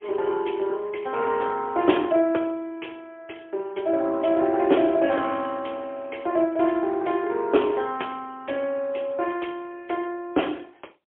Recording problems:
phone line; 280 Hz to 3.3 kHz, AMR-NB, then MP3

